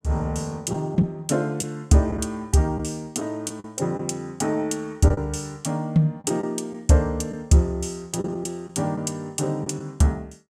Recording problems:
lost packets; 4% of the sound replaced, filled with the last packet

